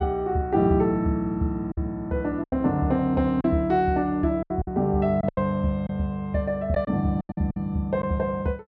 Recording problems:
packet loss; 7% of the sound replaced, filled with silence

